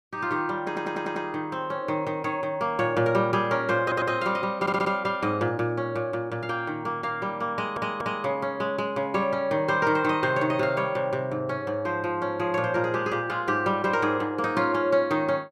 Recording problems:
audio stuttering; 4 times, first at 0.5 s

